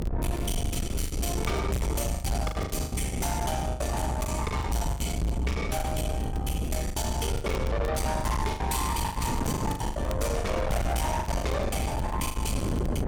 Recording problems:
distortion; soft clipping, signal-to-distortion ratio 7 dB
rumble; below 94 Hz, SNR 2 dB
wind noise; below 350 Hz, SNR 3 dB
crackling; vinyl, SNR 22 dB
lost packets; 14% of the sound replaced, filled with the last packet

